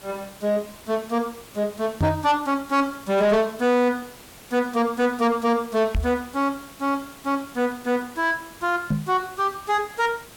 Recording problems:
distorted audio; soft clipping, signal-to-distortion ratio 11 dB
hiss; slope -3 dB per octave, SNR 20 dB
microphone thump; at 2 s, at 6 s and at 9 s; peak +4 dB vs average level

